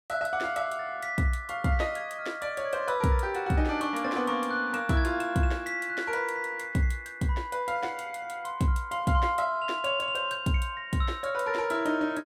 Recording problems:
none

